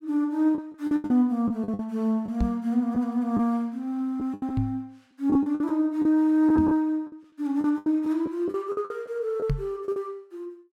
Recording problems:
packet loss; 11% of the sound replaced, filled with the last packet
microphone thump; 4 times, first at 2.5 s; peak +3 dB vs average level

